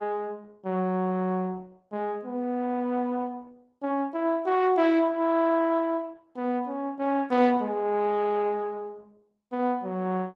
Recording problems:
lossy codec; Opus, log-spectral distance 2 dB

